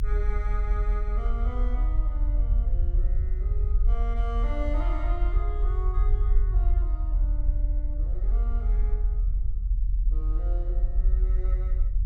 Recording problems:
rumble; below 46 Hz, strongest tone 42 Hz, SNR -13 dB

